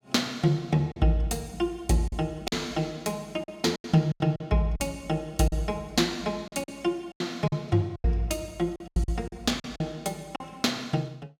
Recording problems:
packet loss; 9% of the sound replaced, filled with silence

